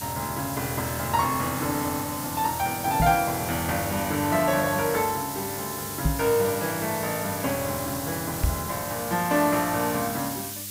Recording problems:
electrical hum; 50 Hz, harmonics up to 900 Hz, SNR 19 dB
hiss; SNR 6 dB
knock on the microphone; at 3 s, at 6 s and at 8.5 s; peak +6 dB vs average level

